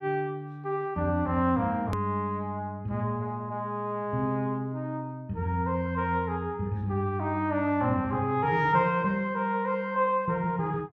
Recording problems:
click at an edit; at 2 s

